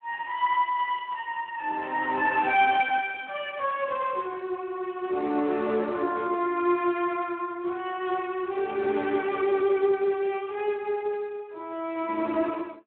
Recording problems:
telephone audio; 240 Hz to 3.1 kHz, Speex

